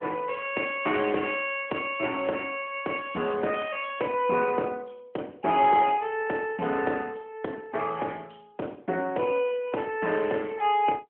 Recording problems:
telephone audio; 240 Hz to 3.3 kHz, AMR-NB

